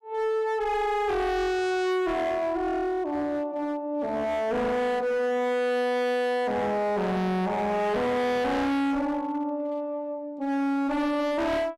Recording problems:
distortion; hard clipping, signal-to-distortion ratio 6 dB

